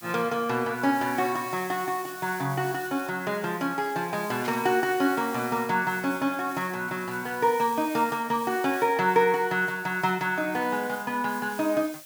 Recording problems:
background hiss; slope +3 dB per octave, SNR 16 dB
static burst; at 4.5 s; peak -8 dB vs average level

